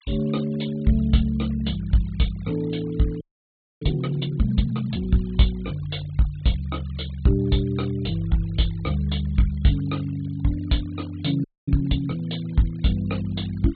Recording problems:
low-pass filter; nothing above 4.3 kHz
noise reduction artefacts; signal-to-artefact ratio 24 dB
frozen audio; at 3 s for 0.5 s and at 11 s

